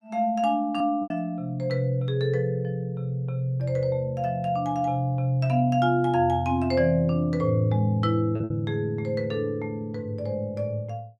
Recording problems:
lost packets; 1.8% of the sound replaced, filled with repeated pitch periods

